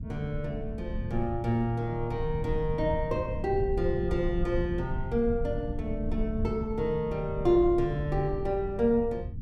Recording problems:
low-frequency rumble; below 110 Hz, SNR 7 dB

